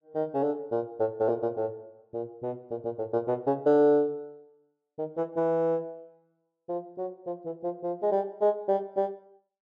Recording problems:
none

